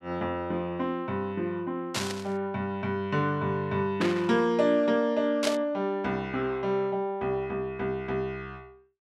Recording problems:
static burst; at 2 s, at 4 s and at 5.5 s; peak +2 dB vs average level

